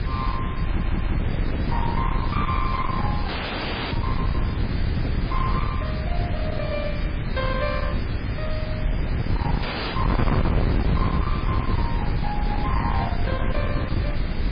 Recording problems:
codec artefacts; MP3, log-spectral distance 6 dB, nothing above 4.2 kHz
distortion; hard clipping, signal-to-distortion ratio 8 dB
hiss; SNR 7 dB
wind on the microphone; below 180 Hz, SNR -5 dB
audio stuttering; at 0.5 s
dropout; at 3.5 s for 0.5 s and at 9.5 s

